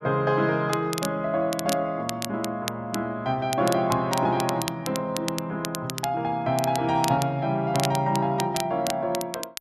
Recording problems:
crackling; vinyl, SNR 9 dB

